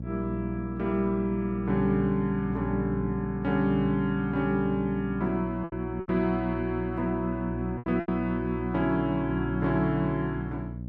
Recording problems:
electrical hum; 60 Hz, harmonics up to 540 Hz, SNR 7 dB
lost packets; 3% of the sound replaced, filled with repeated pitch periods

